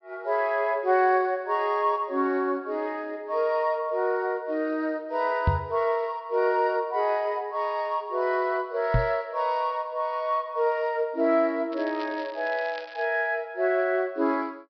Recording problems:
treble missing; nothing above 5.5 kHz
microphone thump; at 5.5 s and at 9 s; peak +7 dB vs average level
crackling; from 12 to 13 s; loose cable, SNR 20 dB

